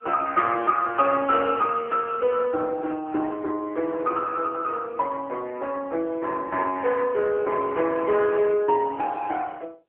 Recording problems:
phone line; 300 Hz to 3.4 kHz, AMR-NB

